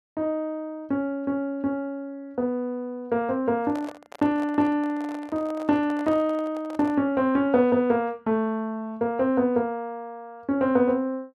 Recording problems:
microphone handling noise; from 3.5 to 7 s; peak -9 dB vs average level

